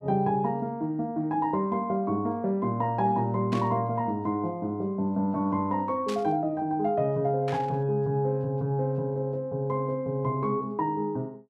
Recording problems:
static burst; at 3.5 s, at 6 s and at 7.5 s; peak -7 dB vs average level

